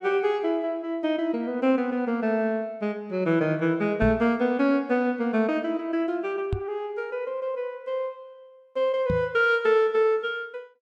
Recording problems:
microphone bump; at 4 s, at 6.5 s and at 9 s; peak +1 dB vs average level

